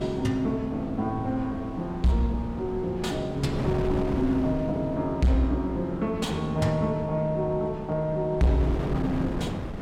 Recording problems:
distortion; hard clipping, signal-to-distortion ratio 11 dB
wind noise; below 400 Hz, SNR 9 dB

